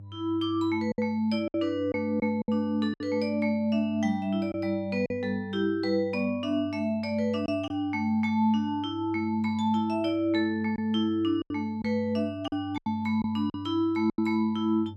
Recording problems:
electrical hum; 50 Hz, harmonics up to 300 Hz, SNR 18 dB
packet loss; 5% of the sound replaced, filled with silence

